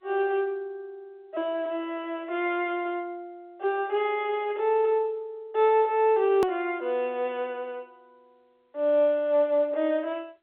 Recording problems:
phone line; 280 Hz to 3.9 kHz, G.711
edit click; at 6.5 s

